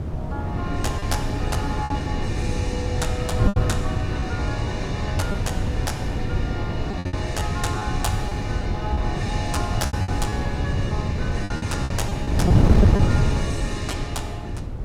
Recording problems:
wind on the microphone; below 190 Hz, SNR -6 dB
lost packets; 7% of the sound replaced, filled with repeated pitch periods

